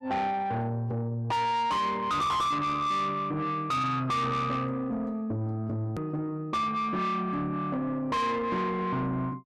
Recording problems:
distortion; soft clipping, signal-to-distortion ratio 6 dB
click at an edit; at 6 s

